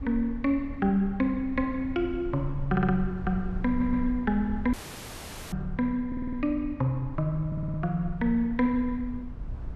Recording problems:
low-frequency rumble; below 78 Hz, SNR 12 dB
audio stuttering; 4 times, first at 2.5 s
audio cutting out; at 4.5 s for 1 s

